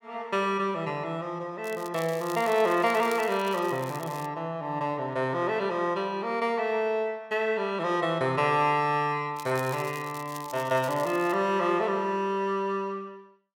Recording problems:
crackling; from 1.5 to 4.5 s and from 9.5 to 11 s; loose cable, SNR 18 dB

